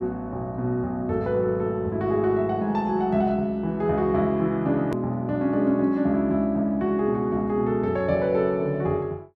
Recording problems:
edit click; at 5 s

